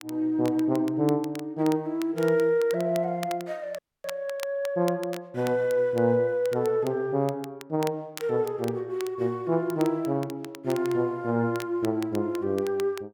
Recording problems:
crackling; vinyl, SNR 19 dB
dropout; at 4 s

